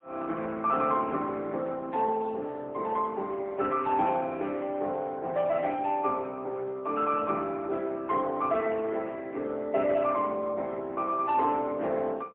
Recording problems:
phone line; 260 Hz to 3.3 kHz, AMR-NB, then MP3

